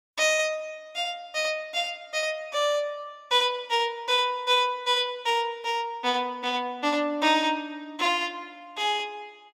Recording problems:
none

